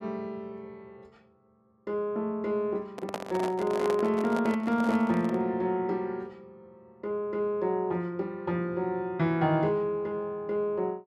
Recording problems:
microphone handling noise; from 3 to 5.5 s; peak 0 dB vs average level

